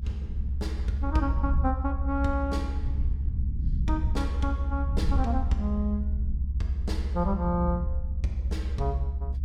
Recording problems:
rumble; below 70 Hz, strongest tone 68 Hz, SNR -2 dB

